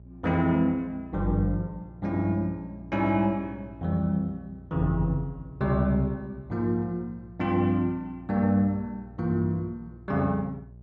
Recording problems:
hum; 60 Hz, harmonics up to 600 Hz, SNR 20 dB

